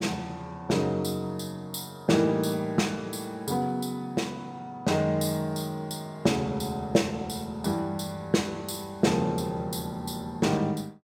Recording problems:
none

